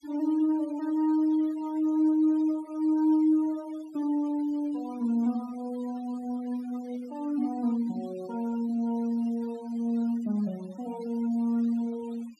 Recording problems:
denoising artefacts; signal-to-artefact ratio 23 dB

